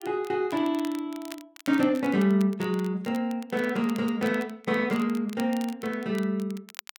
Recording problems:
crackle; vinyl, SNR 20 dB

